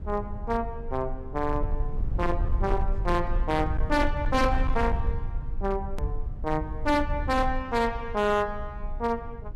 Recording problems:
distortion; hard clipping, signal-to-distortion ratio 12 dB
rumble; below 68 Hz, SNR 4 dB
edit click; at 6 s

